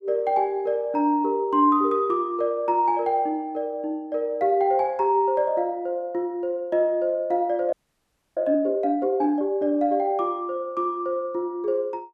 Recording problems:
frozen audio; at 7.5 s for 0.5 s

